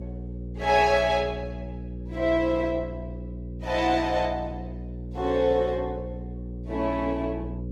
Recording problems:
lossy codec; Opus, log-spectral distance 2 dB
hum; 60 Hz, harmonics up to 540 Hz, SNR 10 dB

